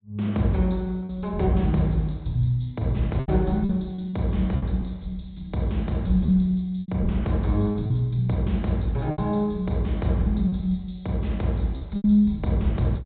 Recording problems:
low-pass filter; nothing above 4 kHz
lost packets; 5% of the sound replaced, filled with repeated pitch periods

